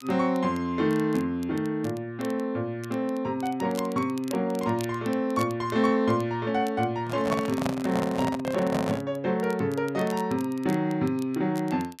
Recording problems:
crackle; vinyl, SNR 22 dB
microphone handling noise; from 7 to 9 s; peak +1 dB vs average level

